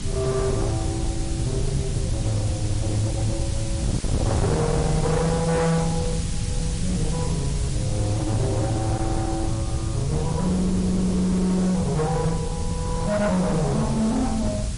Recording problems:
lossy compression; MP3, log-spectral distance 7 dB, nothing above 10.4 kHz
distortion; hard clipping, signal-to-distortion ratio 7 dB
background hiss; slope +2 dB per octave, SNR 12 dB
wind on the microphone; below 160 Hz, SNR 4 dB

